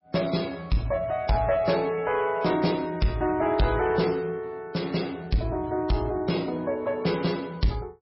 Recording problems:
lossy codec; MP3, log-spectral distance 4 dB, nothing above 5.5 kHz
distorted audio; soft clipping, signal-to-distortion ratio 11 dB

